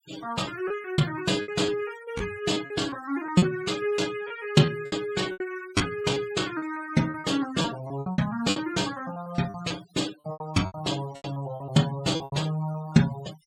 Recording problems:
noise reduction artefacts; signal-to-artefact ratio 16 dB
packet loss; 12% of the sound replaced, filled with repeated pitch periods

